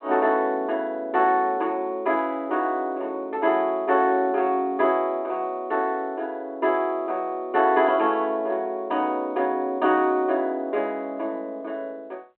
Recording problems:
phone line; 240 Hz to 3.3 kHz, G.726

